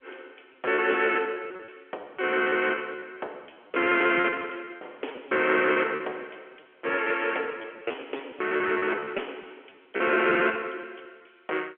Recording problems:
telephone audio; 320 Hz to 3.3 kHz, G.711
lost packets; 17% of the sound replaced, filled with repeated pitch periods

